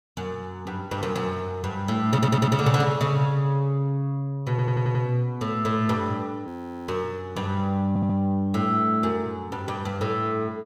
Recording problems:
stutter; at 2 s, at 4.5 s and at 8 s
audio freezing; at 6.5 s

